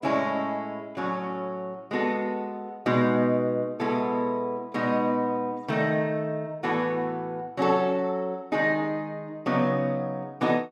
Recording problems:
none

